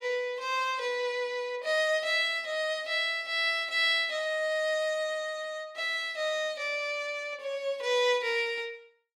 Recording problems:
none

